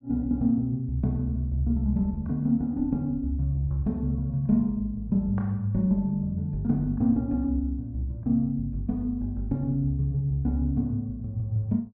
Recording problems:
none

